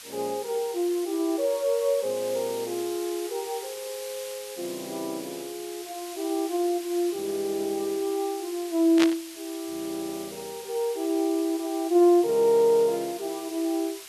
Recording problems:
background hiss; slope +3 dB per octave, SNR 14 dB
static burst; at 9 s; peak +4 dB vs average level

